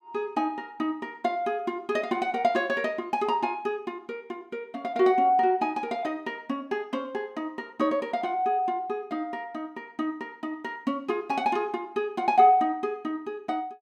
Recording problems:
none

